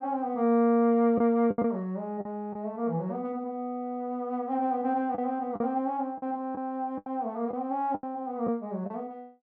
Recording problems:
lost packets; 6% of the sound replaced, filled with the last packet

